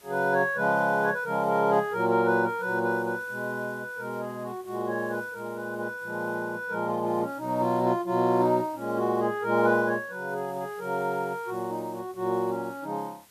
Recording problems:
hiss; slope -1 dB per octave, SNR 26 dB

